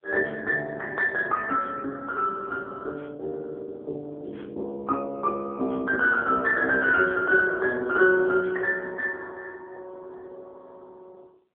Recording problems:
phone line; 280 Hz to 2.8 kHz, AMR-NB

